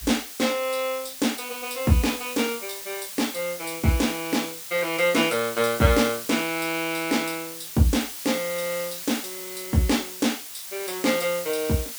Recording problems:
hiss; slope +3 dB per octave, SNR 9 dB

